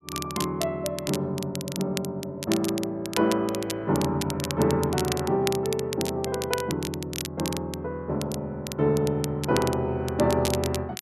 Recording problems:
crackle; vinyl, SNR 9 dB

